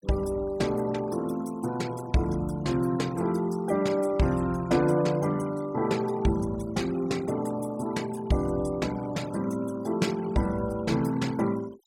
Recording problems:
noise reduction artefacts; signal-to-artefact ratio 19 dB

